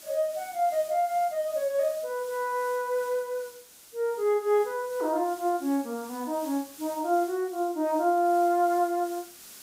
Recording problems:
hiss; slope 0 dB per octave, SNR 19 dB

